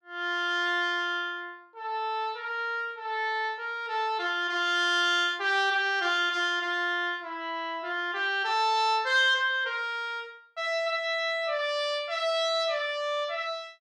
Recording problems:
none

